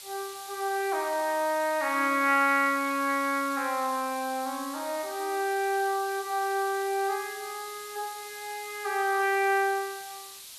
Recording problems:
hiss; SNR 14 dB

